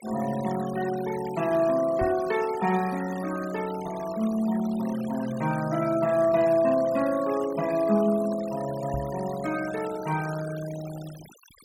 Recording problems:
denoising artefacts; signal-to-artefact ratio 17 dB
microphone bump; at 2 s and at 9 s; peak -3 dB vs average level

